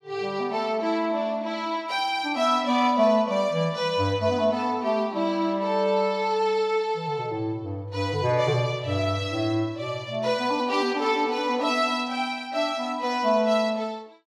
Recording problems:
none

